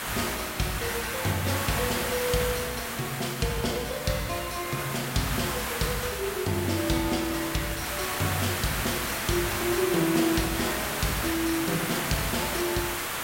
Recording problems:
hiss; SNR 1 dB

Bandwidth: 16 kHz